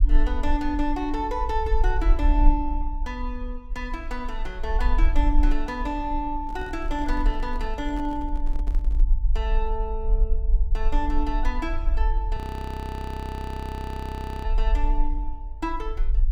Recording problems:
low-frequency rumble; below 44 Hz, SNR -2 dB
microphone handling noise; from 6.5 to 9 s; peak -5 dB vs average level
audio freezing; at 12 s for 2 s

